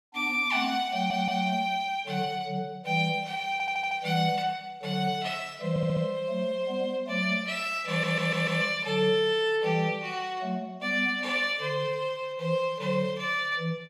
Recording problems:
stutter; 4 times, first at 1 s

